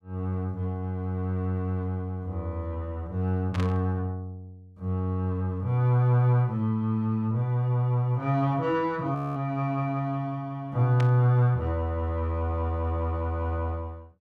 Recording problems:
burst of static; at 3.5 s and at 11 s; peak -6 dB vs average level
audio freezing; at 9 s

